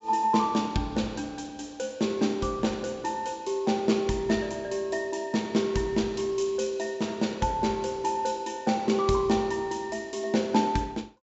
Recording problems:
treble missing; nothing above 7.6 kHz

